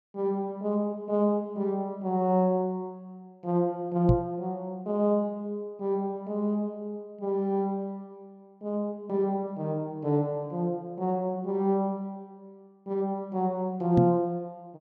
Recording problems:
microphone thump; at 4 s and at 14 s; peak +9 dB vs average level

